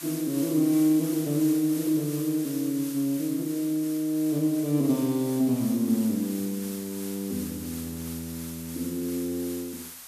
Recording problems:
hiss; SNR 12 dB

